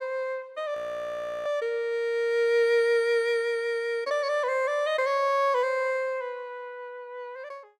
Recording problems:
audio freezing; at 1 s for 0.5 s

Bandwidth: 16.5 kHz